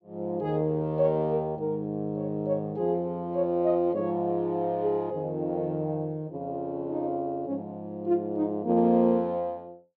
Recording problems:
none

